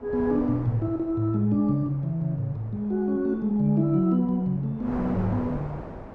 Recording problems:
wind on the microphone; below 710 Hz, SNR 14 dB

